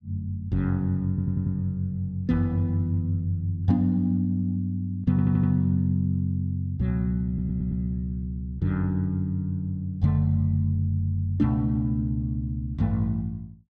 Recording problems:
stutter; at 1 s, at 5 s and at 7.5 s

